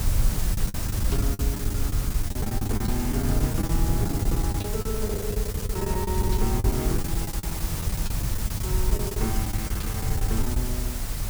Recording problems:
background hiss; slope -2 dB per octave, SNR 2 dB
rumble; below 96 Hz, SNR -1 dB
wind noise; below 110 Hz, SNR 3 dB
packet loss; 15% of the sound replaced, filled with the last packet

